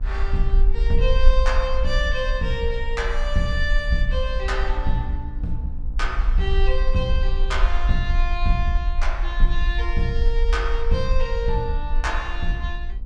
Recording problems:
hum; 60 Hz, harmonics up to 1 kHz, SNR 17 dB
rumble; below 44 Hz, SNR -1 dB

